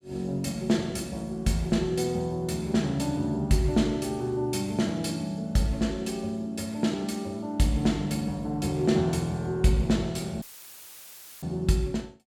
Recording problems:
dropout; at 10 s for 1 s; filled with static

